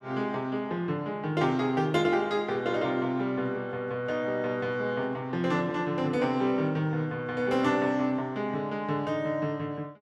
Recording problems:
none

